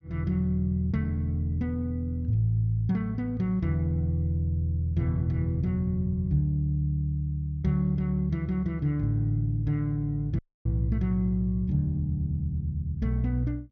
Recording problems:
dropout; at 10 s

